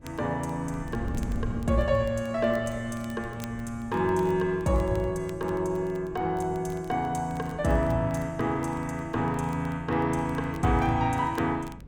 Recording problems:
wind on the microphone; below 180 Hz, SNR 15 dB
crackle; vinyl, SNR 27 dB

